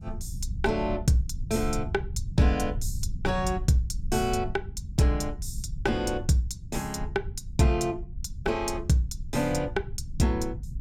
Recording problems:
low-frequency rumble; below 92 Hz, SNR 9 dB

